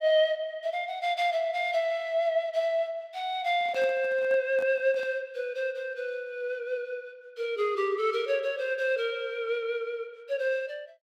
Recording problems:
handling noise; from 3.5 to 5 s; peak -11 dB vs average level

